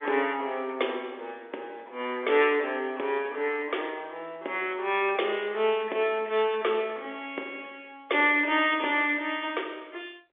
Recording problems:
telephone audio; 320 Hz to 3.6 kHz, G.711

